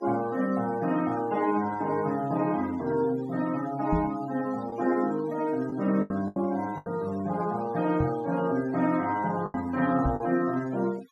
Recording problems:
denoising artefacts; signal-to-artefact ratio 18 dB
lost packets; 4% of the sound replaced, filled with the last packet
knock on the microphone; at 4 s, at 8 s and at 10 s; peak +3 dB vs average level

